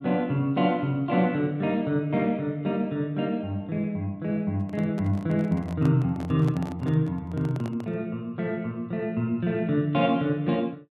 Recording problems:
handling noise; from 4.5 to 8 s; peak -7 dB vs average level

